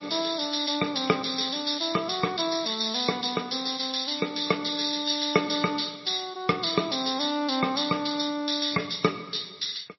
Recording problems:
codec artefacts; MP3, log-spectral distance 8 dB, nothing above 5.5 kHz

